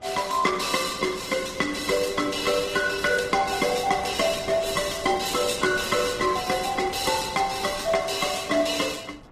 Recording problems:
lossy codec; Opus, log-spectral distance 6 dB, nothing above 14.7 kHz
wind noise; below 820 Hz, SNR 21 dB

